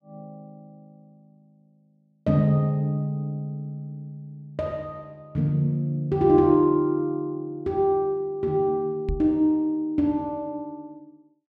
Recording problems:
microphone thump; at 9 s; peak -1 dB vs average level

